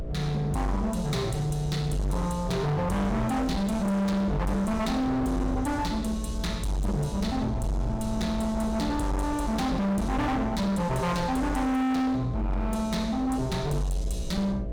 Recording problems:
distortion; hard clipping, signal-to-distortion ratio 7 dB
hum; 60 Hz, harmonics up to 660 Hz, SNR 13 dB
low-frequency rumble; below 130 Hz, strongest tone 48 Hz, SNR 10 dB

